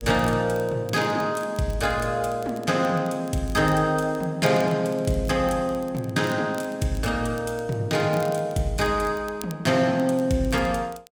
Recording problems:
crackle; vinyl, SNR 24 dB

